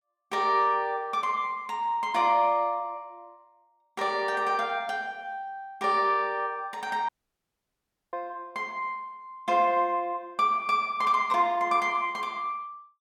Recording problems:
audio cutting out; at 7 s for 1 s

